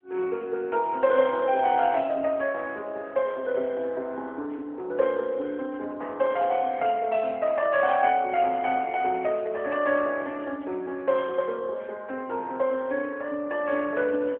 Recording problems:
telephone audio; 260 Hz to 3.3 kHz, AMR-NB

